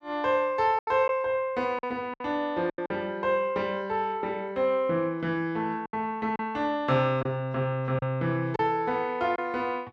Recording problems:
lost packets; 5% of the sound replaced, filled with silence

